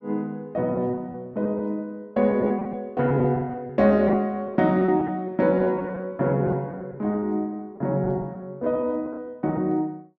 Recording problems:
packet loss; 9% of the sound replaced, filled with repeated pitch periods

